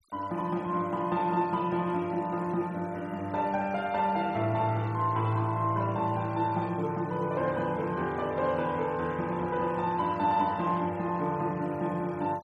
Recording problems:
noise reduction artefacts; signal-to-artefact ratio 25 dB

